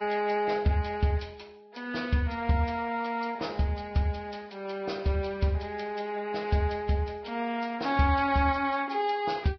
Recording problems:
codec artefacts; Vorbis, log-spectral distance 4 dB, nothing above 5.3 kHz

